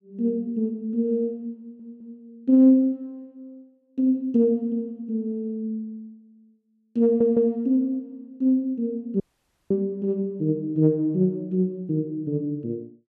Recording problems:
audio stuttering; at 1.5 s and at 7 s
dropout; at 9 s for 0.5 s

